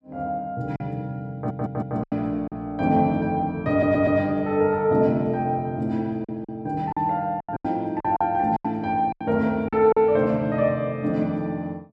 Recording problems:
lost packets; 7% of the sound replaced, filled with silence
stutter; at 1.5 s and at 3.5 s

